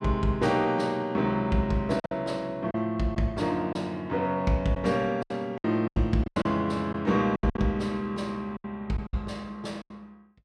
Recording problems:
lost packets; 8% of the sound replaced, filled with silence

